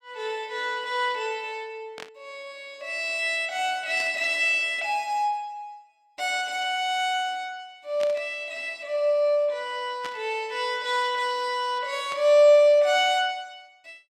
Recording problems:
burst of static; 5 times, first at 2 s; peak -9 dB vs average level

